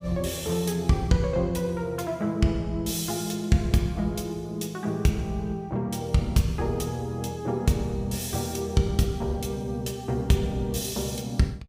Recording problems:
none

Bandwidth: 15.5 kHz